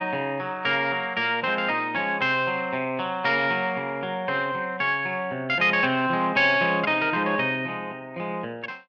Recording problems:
none

